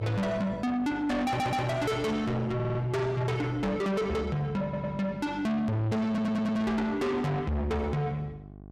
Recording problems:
distorted audio; soft clipping, signal-to-distortion ratio 6 dB
electrical hum; 50 Hz, harmonics up to 1.1 kHz, SNR 18 dB
stutter; 4 times, first at 1.5 s

